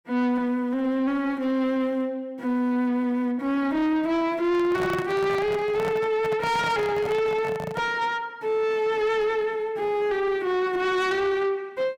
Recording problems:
distorted audio; soft clipping, signal-to-distortion ratio 10 dB
handling noise; from 4.5 to 8 s; peak -3 dB vs average level

